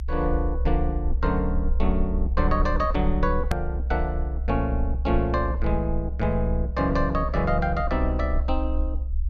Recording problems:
rumble; below 64 Hz, SNR 1 dB
edit click; at 3.5 s

